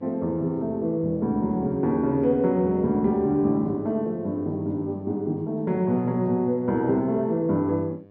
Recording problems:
electrical hum; 50 Hz, harmonics up to 1.2 kHz, SNR 27 dB

